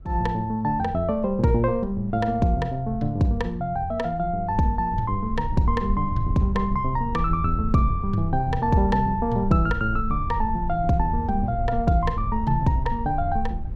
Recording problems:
low-frequency rumble; below 74 Hz, SNR 9 dB

